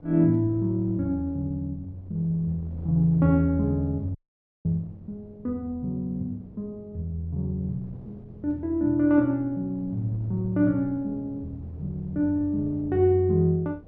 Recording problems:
wind noise; below 310 Hz, SNR 21 dB
audio cutting out; at 4 s for 0.5 s

